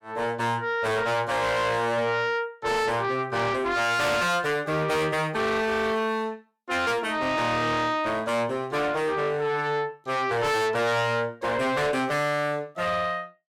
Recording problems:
distorted audio; soft clipping, signal-to-distortion ratio 7 dB

